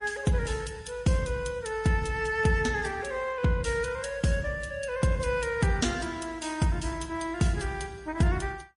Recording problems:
lossy compression; Opus, then MP3, log-spectral distance 4 dB, nothing above 10.4 kHz

